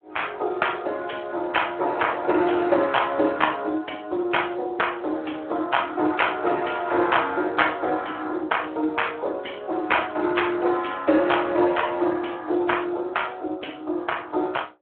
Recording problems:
telephone audio; 280 Hz to 3.3 kHz, Speex

